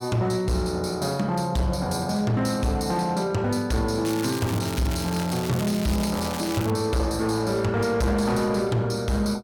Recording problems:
distortion; hard clipping, signal-to-distortion ratio 11 dB
crackle; from 4 to 6 s and at 6 s; loose cable, SNR 11 dB

